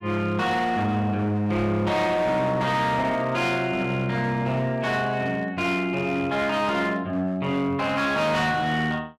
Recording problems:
distortion; hard clipping, signal-to-distortion ratio 11 dB

